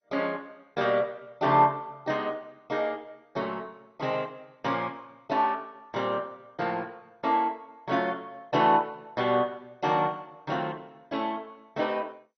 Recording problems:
lossy codec; MP2, log-spectral distance 3 dB, nothing above 6 kHz

